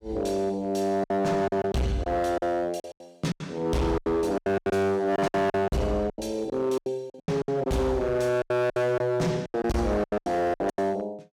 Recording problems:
distortion; hard clipping, signal-to-distortion ratio 8 dB
lost packets; 16% of the sound replaced, filled with silence

